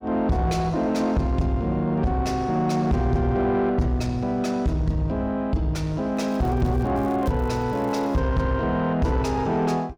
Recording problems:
distorted audio; soft clipping, signal-to-distortion ratio 10 dB
crackle; from 6 to 8 s; loose cable, SNR 29 dB

